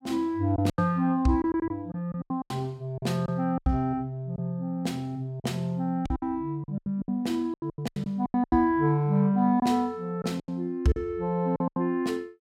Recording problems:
packet loss; 13% of the sound replaced, filled with silence

